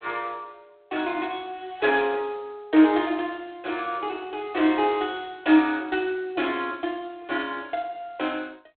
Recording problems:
telephone audio; 240 Hz to 3.7 kHz, G.726

